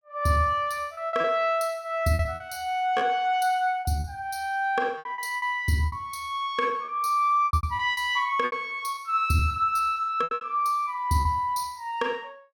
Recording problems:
lost packets; 10% of the sound replaced, filled with repeated pitch periods

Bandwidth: 17.5 kHz